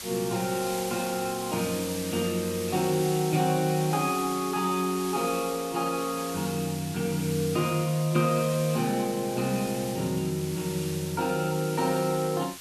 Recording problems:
hiss; slope +2 dB per octave, SNR 10 dB

